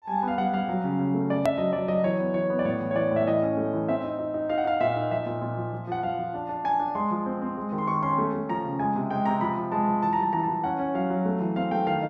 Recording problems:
click at an edit; at 1.5 s

